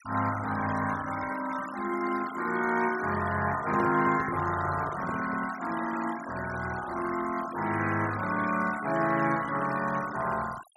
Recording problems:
noise reduction artefacts; signal-to-artefact ratio 13 dB
microphone handling noise; from 3.5 to 5.5 s; peak -4 dB vs average level

